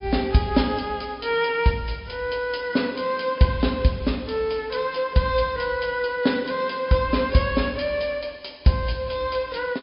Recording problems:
low-pass filter; nothing above 5.2 kHz
lossy compression; MP3, log-spectral distance 5 dB

